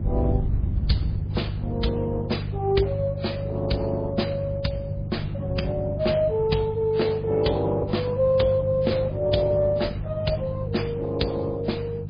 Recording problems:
lossy compression; Opus, then MP3, log-spectral distance 2 dB
hum; 50 Hz, harmonics up to 350 Hz, SNR 4 dB
low-frequency rumble; below 110 Hz, SNR 8 dB

